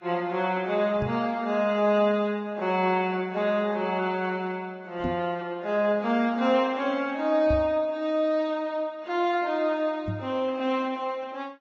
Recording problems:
lossy codec; Vorbis, then AAC, log-spectral distance 2 dB
knock on the microphone; 4 times, first at 1 s; peak -1 dB vs average level

